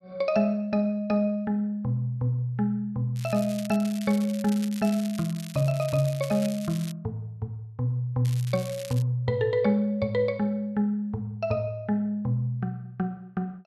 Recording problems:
crackle; from 3 to 7 s and at 8.5 s; loose cable, SNR 16 dB

